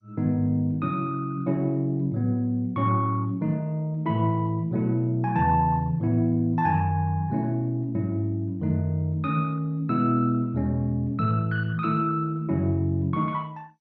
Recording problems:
lossy codec; MP2, log-spectral distance 2 dB

